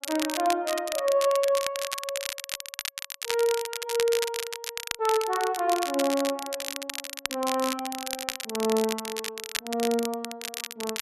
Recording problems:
crackle; vinyl, SNR 5 dB

